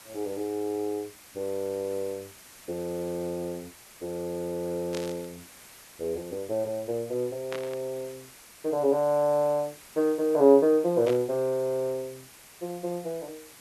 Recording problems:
background hiss; slope -1 dB per octave, SNR 20 dB
burst of static; at 5 s, at 7.5 s and at 11 s; peak -6 dB vs average level

